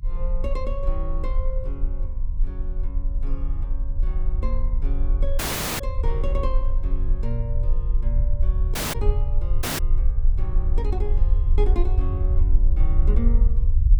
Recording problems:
rumble; below 50 Hz, strongest tone 24 Hz, SNR -10 dB
dropout; at 5.5 s, at 9 s and at 9.5 s

